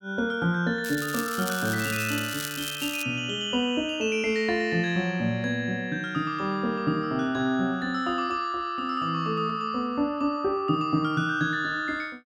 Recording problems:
crackling; from 1 to 3 s; loose cable, SNR 8 dB

